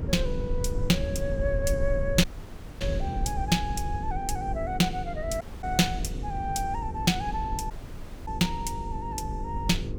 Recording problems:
hum; 50 Hz, harmonics up to 500 Hz, SNR 12 dB
low-frequency rumble; below 92 Hz, SNR 5 dB
audio cutting out; at 2 s for 0.5 s, at 5.5 s and at 7.5 s for 0.5 s

